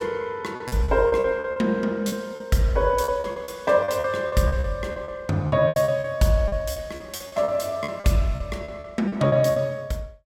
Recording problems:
packet loss; 15% of the sound replaced, filled with repeated pitch periods

